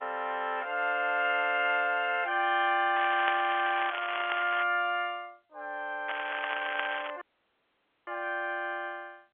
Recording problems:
telephone audio; 220 Hz to 3.4 kHz, G.711
crackling; from 3 to 4.5 s and from 6 to 7 s; loose cable, SNR 8 dB
dropout; at 7 s for 1 s

